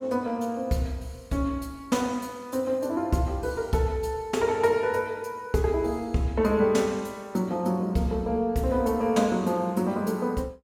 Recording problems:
none

